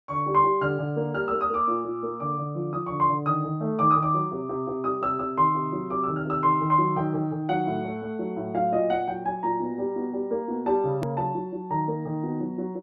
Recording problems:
edit click; at 11 s

